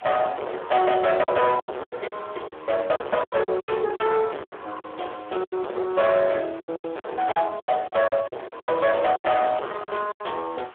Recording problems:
phone line; 320 Hz to 3.4 kHz, Speex
distorted audio; hard clipping, signal-to-distortion ratio 3 dB
hiss; SNR 23 dB
packet loss; 14% of the sound replaced, filled with silence

